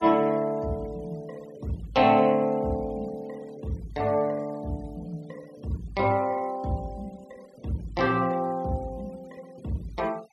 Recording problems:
denoising artefacts; signal-to-artefact ratio 26 dB

